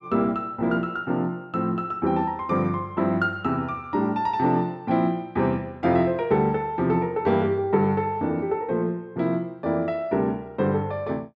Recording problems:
none

